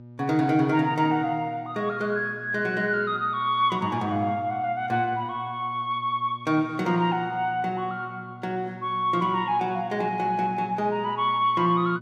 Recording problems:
hum; 60 Hz, harmonics up to 600 Hz, SNR 19 dB

